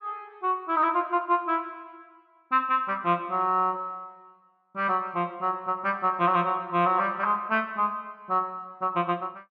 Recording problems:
none

